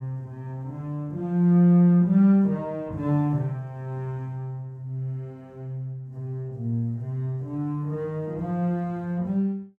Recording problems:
none

